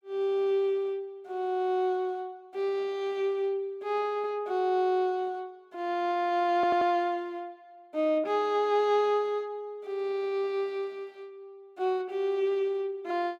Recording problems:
audio stuttering; at 6.5 s

